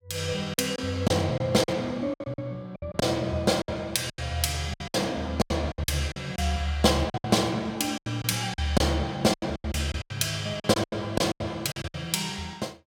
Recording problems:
lost packets; 14% of the sound replaced, filled with silence

